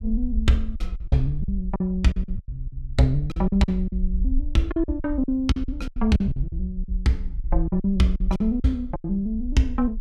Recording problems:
low-frequency rumble; below 54 Hz, SNR 6 dB
lost packets; 13% of the sound replaced, filled with silence

